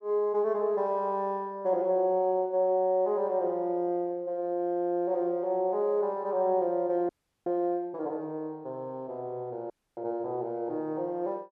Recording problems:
frozen audio; at 7 s and at 9.5 s

